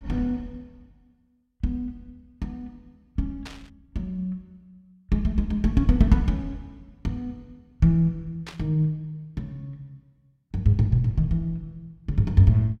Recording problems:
static burst; at 3.5 s and at 8.5 s; peak -9 dB vs average level

